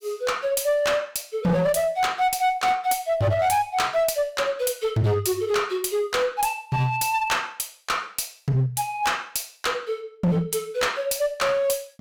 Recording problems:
distorted audio; hard clipping, uneven, signal-to-distortion ratio 10 dB

